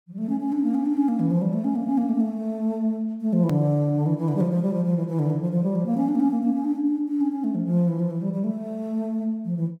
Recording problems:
edit click; at 3.5 s

